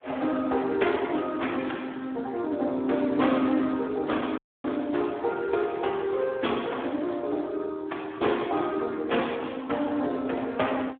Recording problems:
phone line; 220 Hz to 3.5 kHz, Speex
audio cutting out; at 4.5 s

